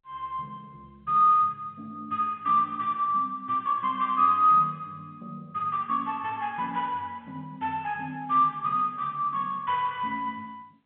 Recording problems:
phone line; 240 Hz to 3.5 kHz, G.711

